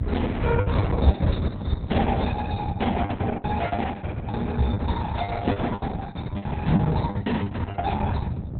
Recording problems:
codec artefacts; AAC, then Opus, log-spectral distance 4 dB, nothing above 4 kHz
electrical hum; 60 Hz, harmonics up to 1.2 kHz, SNR 10 dB
low-frequency rumble; below 130 Hz, SNR 1 dB
lost packets; 18% of the sound replaced, filled with the last packet

